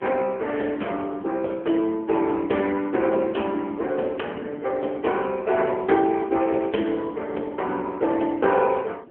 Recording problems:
phone line; 240 Hz to 3.3 kHz, AMR-NB
wind noise; below 470 Hz, SNR 20 dB

